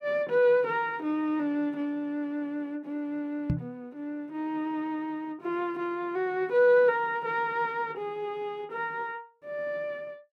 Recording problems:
microphone bump; at 3.5 s; peak +5 dB vs average level

